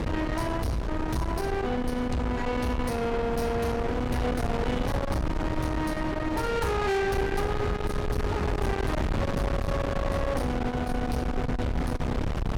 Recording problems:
distorted audio; soft clipping, signal-to-distortion ratio 8 dB
wind noise; below 550 Hz, SNR 2 dB

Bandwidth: 17.5 kHz